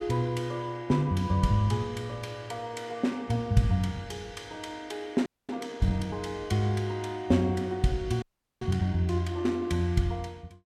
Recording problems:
frozen audio; at 5.5 s and at 8 s

